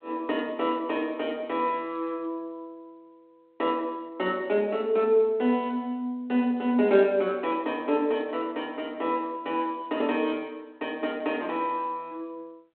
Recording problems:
telephone audio; 220 Hz to 3.4 kHz, G.726

